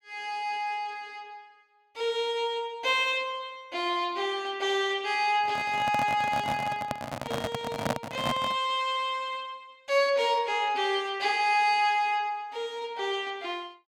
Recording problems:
microphone handling noise; from 5.5 to 8.5 s; peak +4 dB vs average level

